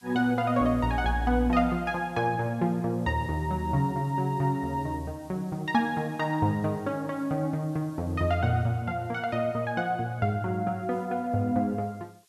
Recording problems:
hiss; slope +4 dB per octave, SNR 30 dB

